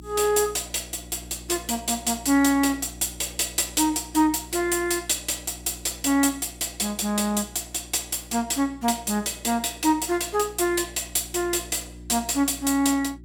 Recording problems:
hum; 60 Hz, harmonics up to 360 Hz, SNR 20 dB

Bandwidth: 17.5 kHz